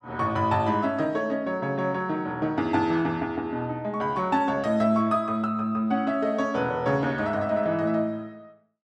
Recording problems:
none

